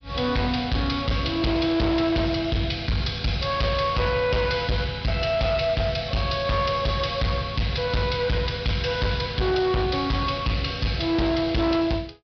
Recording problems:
low-pass filter; nothing above 5.5 kHz
distorted audio; hard clipping, signal-to-distortion ratio 8 dB

